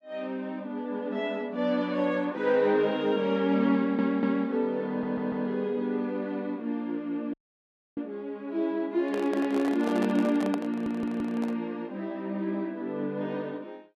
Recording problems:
stutter; at 4 s, at 5 s and at 11 s
audio cutting out; at 7.5 s for 0.5 s
handling noise; from 9 to 12 s; peak -2 dB vs average level

